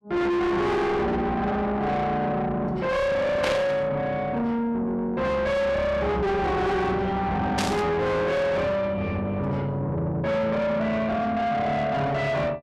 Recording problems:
distortion; soft clipping, signal-to-distortion ratio 6 dB
static burst; at 3.5 s and at 7.5 s; peak +1 dB vs average level

